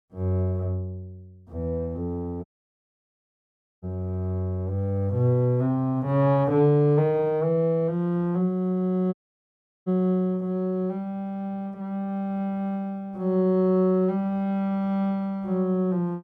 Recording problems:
audio cutting out; at 2.5 s for 1.5 s and at 9 s for 0.5 s

